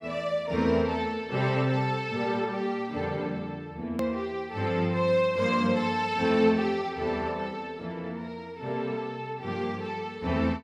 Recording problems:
hard cut with a click; at 4 s

